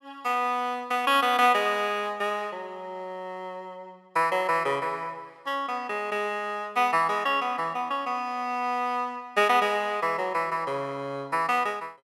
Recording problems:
none

